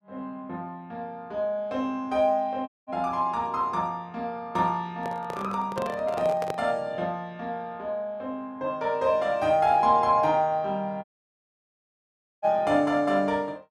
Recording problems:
dropout; at 2.5 s and at 11 s for 1.5 s
microphone handling noise; from 5 to 6.5 s; peak -2 dB vs average level

